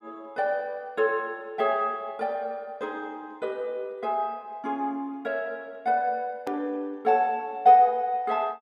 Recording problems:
click at an edit; at 6.5 s

